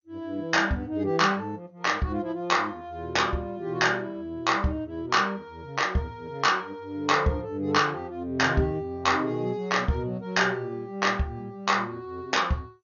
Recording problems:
codec artefacts; MP2, log-spectral distance 2 dB, nothing above 6.7 kHz

